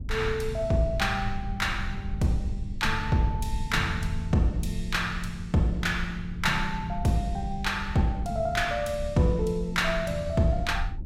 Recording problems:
low-frequency rumble; below 82 Hz, SNR 9 dB

